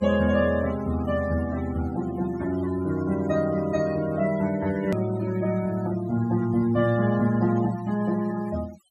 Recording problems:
denoising artefacts; signal-to-artefact ratio 17 dB
click at an edit; at 5 s

